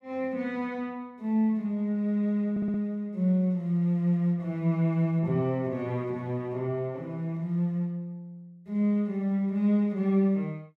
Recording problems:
audio stuttering; at 2.5 s

